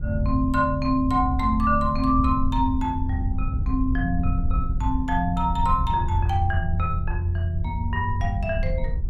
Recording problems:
wind on the microphone; below 84 Hz, SNR 4 dB

